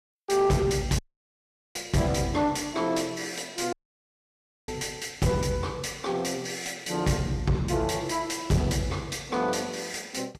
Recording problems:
codec artefacts; Vorbis, log-spectral distance 4 dB, nothing above 13.1 kHz
distorted audio; soft clipping, signal-to-distortion ratio 10 dB
dropout; at 1 s for 1 s and at 3.5 s for 1 s

